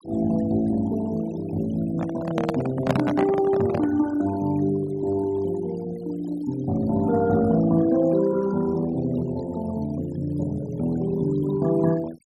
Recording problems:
noise reduction artefacts; signal-to-artefact ratio 20 dB
handling noise; from 2 to 4 s; peak +4 dB vs average level

